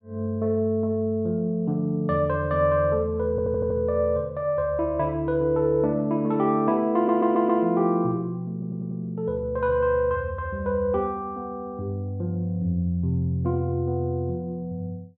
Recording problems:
stutter; at 3.5 s, at 7 s and at 8.5 s

